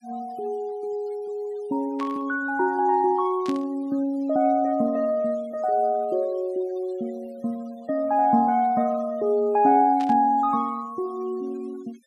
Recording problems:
noise reduction artefacts; signal-to-artefact ratio 27 dB
static burst; at 2 s, at 3.5 s and at 10 s; peak -11 dB vs average level

